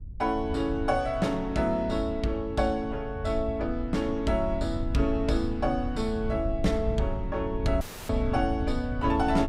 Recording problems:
wind noise; below 84 Hz, SNR 7 dB
dropout; at 8 s

